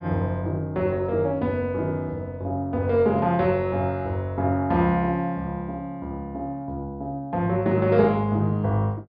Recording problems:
treble missing; nothing above 5.5 kHz

